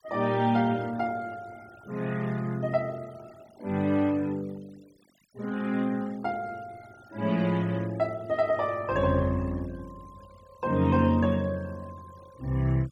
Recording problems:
denoising artefacts; signal-to-artefact ratio 25 dB

